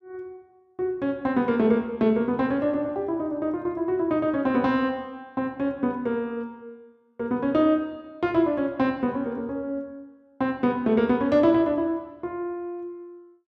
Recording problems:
none

